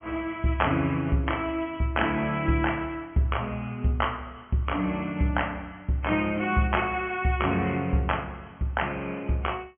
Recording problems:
treble missing; nothing above 3.2 kHz

